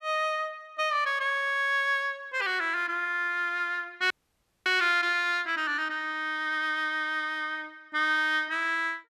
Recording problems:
frozen audio; at 4 s for 0.5 s

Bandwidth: 14 kHz